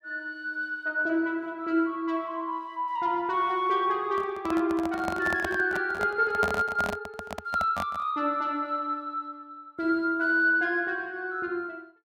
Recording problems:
handling noise; from 4 to 8 s; peak +1 dB vs average level

